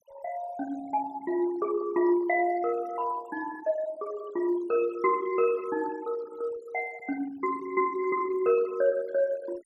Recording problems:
noise reduction artefacts; signal-to-artefact ratio 20 dB

